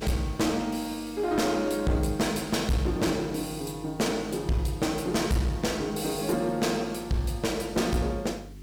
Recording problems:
distorted audio; hard clipping, uneven, signal-to-distortion ratio 10 dB
hum; 50 Hz, harmonics up to 400 Hz, SNR 20 dB
hiss; slope 0 dB per octave, SNR 28 dB

